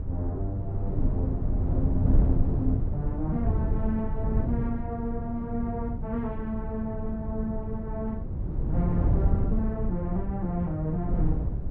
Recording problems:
electrical hum; 50 Hz, harmonics up to 600 Hz, SNR 15 dB
wind on the microphone; below 130 Hz, SNR -2 dB

